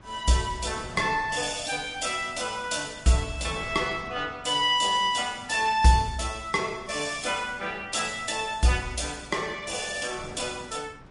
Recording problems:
codec artefacts; MP3, log-spectral distance 6 dB, nothing above 10.4 kHz
wind noise; below 760 Hz, SNR 20 dB

